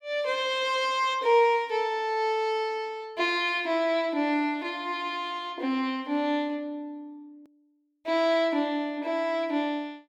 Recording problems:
click at an edit; at 7.5 s

